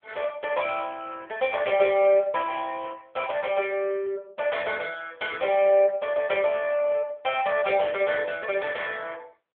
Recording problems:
telephone audio; 340 Hz to 3.4 kHz, AMR-NB

